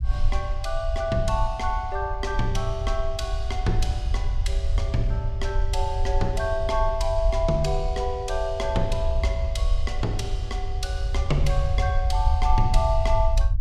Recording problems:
low-frequency rumble; below 64 Hz, SNR 0 dB

